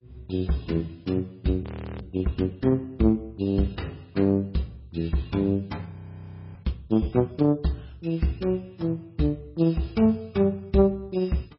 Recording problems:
lossy codec; MP3, log-spectral distance 2 dB, nothing above 5.2 kHz
frozen audio; at 1.5 s and at 6 s for 0.5 s

